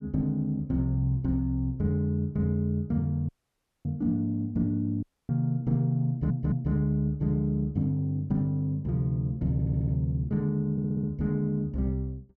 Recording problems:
dropout; at 3.5 s for 0.5 s and at 5 s
stutter; at 6 s, at 9.5 s and at 11 s

